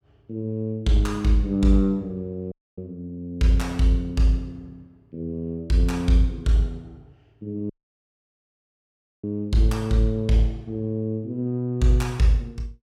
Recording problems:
dropout; at 2.5 s and at 7.5 s for 1.5 s

